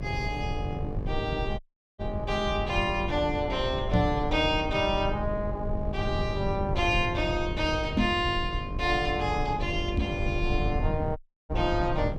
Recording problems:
hum; 50 Hz, harmonics up to 1.3 kHz, SNR 12 dB
rumble; below 120 Hz, SNR 5 dB
audio cutting out; at 1.5 s and at 11 s
knock on the microphone; at 4 s, at 8 s and at 10 s; peak +7 dB vs average level

